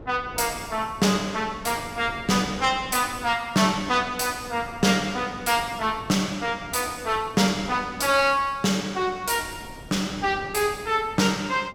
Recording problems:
wind on the microphone; below 460 Hz, SNR 19 dB

